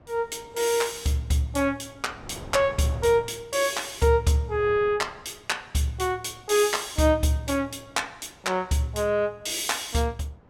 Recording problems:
wind noise; below 630 Hz, SNR 22 dB

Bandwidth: 17 kHz